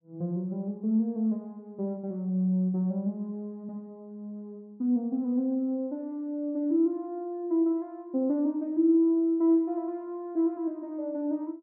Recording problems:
none

